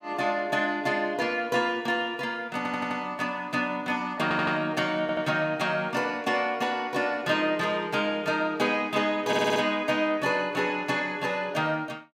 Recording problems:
audio stuttering; 4 times, first at 2.5 s

